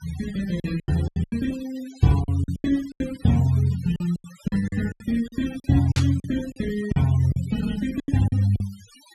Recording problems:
noise reduction artefacts; signal-to-artefact ratio 19 dB
packet loss; 14% of the sound replaced, filled with silence
static burst; at 6 s; peak -3 dB vs average level

